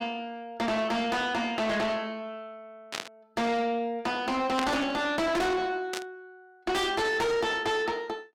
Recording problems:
distortion; soft clipping, signal-to-distortion ratio 6 dB
burst of static; at 3 s, at 4.5 s and at 6 s; peak 0 dB vs average level

